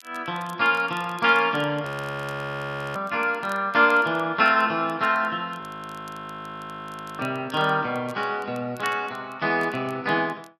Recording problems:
crackling; vinyl, SNR 28 dB
audio freezing; at 2 s for 1 s and at 5.5 s for 1.5 s

